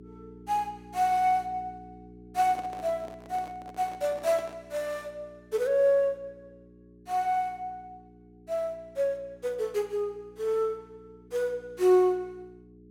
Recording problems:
hum; 60 Hz, harmonics up to 420 Hz, SNR 23 dB
microphone handling noise; from 2.5 to 4.5 s; peak -11 dB vs average level

